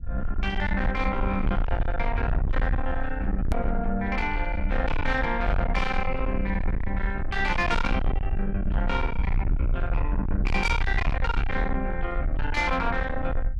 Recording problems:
distorted audio; soft clipping, signal-to-distortion ratio 6 dB
rumble; below 68 Hz, SNR 2 dB
click at an edit; at 3.5 s

